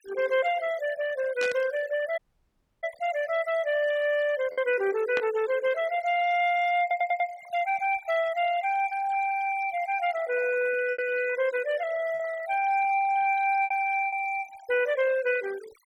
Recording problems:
denoising artefacts; signal-to-artefact ratio 18 dB
lost packets; 2% of the sound replaced, filled with repeated pitch periods
burst of static; at 1.5 s and at 5 s; peak -3 dB vs average level
dropout; at 2 s for 0.5 s
audio stuttering; at 7 s

